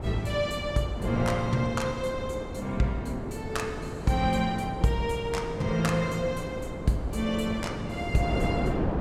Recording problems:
wind on the microphone; below 490 Hz, SNR 5 dB

